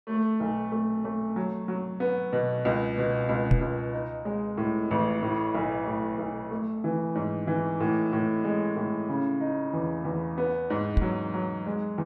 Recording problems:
knock on the microphone; at 3.5 s and at 11 s; peak +9 dB vs average level

